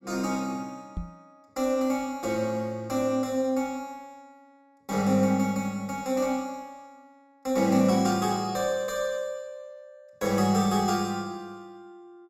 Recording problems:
microphone bump; at 1 s; peak -3 dB vs average level

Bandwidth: 16.5 kHz